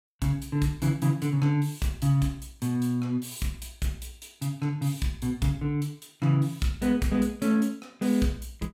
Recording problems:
none

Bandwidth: 16.5 kHz